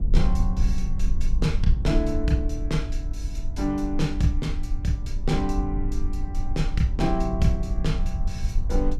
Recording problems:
low-frequency rumble; below 52 Hz, SNR 1 dB

